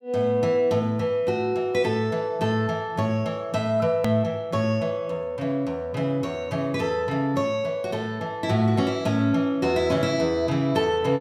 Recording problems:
click at an edit; at 4 s

